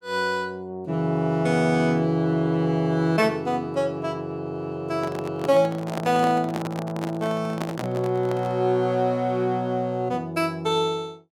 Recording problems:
microphone handling noise; from 5 to 8.5 s; peak -2 dB vs average level

